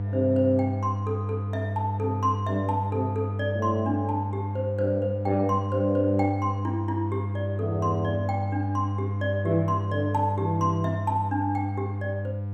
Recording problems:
hum; 50 Hz, harmonics up to 700 Hz, SNR 2 dB

